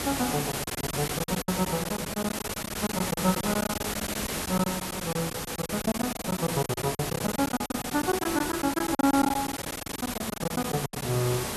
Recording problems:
background hiss; slope -3 dB per octave, SNR 2 dB
packet loss; 18% of the sound replaced, filled with silence

